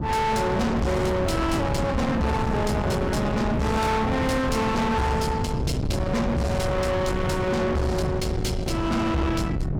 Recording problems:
distorted audio; soft clipping, signal-to-distortion ratio 7 dB
wind on the microphone; below 550 Hz, SNR 3 dB

